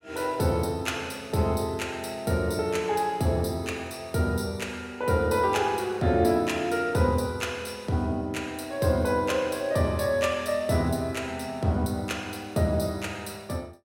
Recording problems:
none

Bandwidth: 16.5 kHz